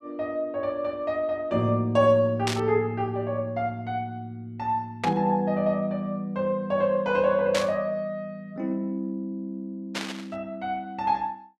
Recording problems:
static burst; 4 times, first at 2.5 s; peak +1 dB vs average level

